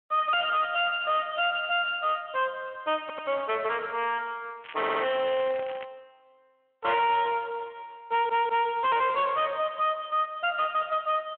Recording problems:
phone line; 320 Hz to 3.2 kHz, Speex
distorted audio; soft clipping, signal-to-distortion ratio 6 dB
audio stuttering; at 3 s, at 5 s and at 8 s
crackle; from 4.5 to 6 s; loose cable, SNR 18 dB

